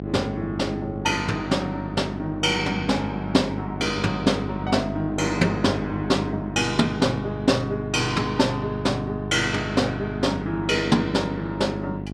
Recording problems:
mains hum; 50 Hz, harmonics up to 800 Hz, SNR 7 dB

